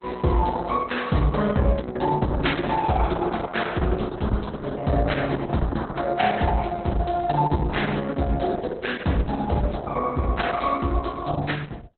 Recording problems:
lossy compression; Opus, log-spectral distance 6 dB, nothing above 4 kHz

